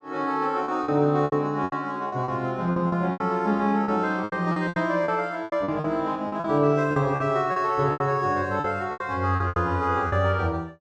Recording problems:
packet loss; 14% of the sound replaced, filled with repeated pitch periods

